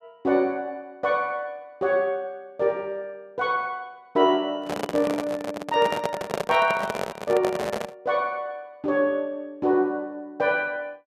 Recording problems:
microphone handling noise; from 4.5 to 8 s; peak +2 dB vs average level

